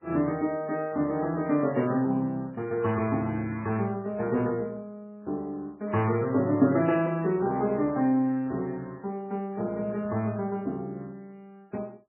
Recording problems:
codec artefacts; MP3, log-spectral distance 2 dB, nothing above 2.7 kHz

